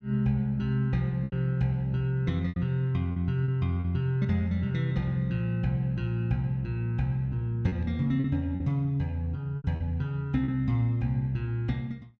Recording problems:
lost packets; 5% of the sound replaced, filled with repeated pitch periods

